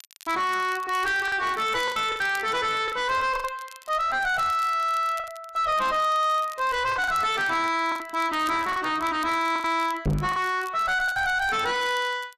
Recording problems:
lossy codec; AAC, log-spectral distance 2 dB, nothing above 10.4 kHz
distorted audio; soft clipping, signal-to-distortion ratio 5 dB
crackling; vinyl, SNR 22 dB
lost packets; 7% of the sound replaced, filled with the last packet
knock on the microphone; at 10 s; peak +2 dB vs average level

